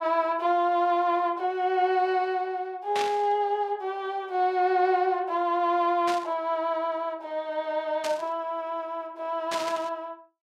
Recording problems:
burst of static; 4 times, first at 3 s; peak -2 dB vs average level

